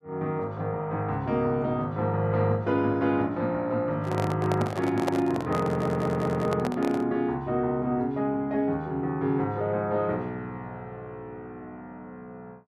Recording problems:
microphone handling noise; from 4 to 7 s; peak +2 dB vs average level
audio stuttering; at 5.5 s

